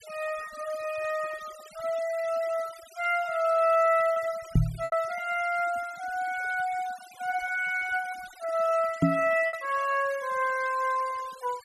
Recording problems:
denoising artefacts; signal-to-artefact ratio 20 dB
packet loss; 1.9% of the sound replaced, filled with repeated pitch periods
microphone bump; at 4.5 s and at 9 s; peak +9 dB vs average level

